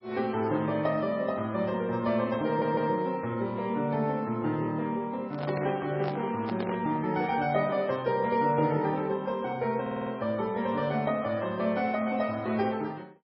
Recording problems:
codec artefacts; MP3, log-spectral distance 2 dB, nothing above 5.2 kHz
audio stuttering; at 2.5 s and at 10 s
microphone handling noise; from 5.5 to 7 s; peak -3 dB vs average level

